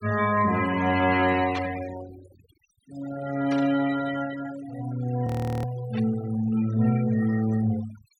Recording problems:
noise reduction artefacts; signal-to-artefact ratio 15 dB
burst of static; at 1.5 s, at 3.5 s and at 6 s; peak -6 dB vs average level
frozen audio; at 5.5 s

